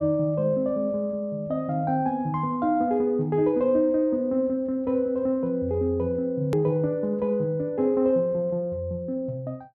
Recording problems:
edit click; at 6.5 s

